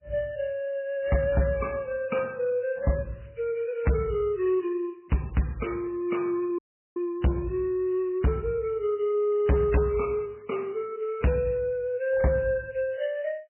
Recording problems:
codec artefacts; MP3, log-spectral distance 2 dB, nothing above 2.9 kHz
distortion; hard clipping, signal-to-distortion ratio 11 dB
dropout; at 6.5 s

